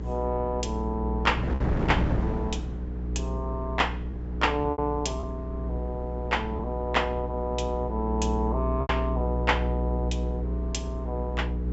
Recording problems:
low-pass filter; nothing above 7.6 kHz
hum; 60 Hz, harmonics up to 480 Hz, SNR 2 dB
wind on the microphone; below 380 Hz, SNR 8 dB
lost packets; 2% of the sound replaced, filled with repeated pitch periods

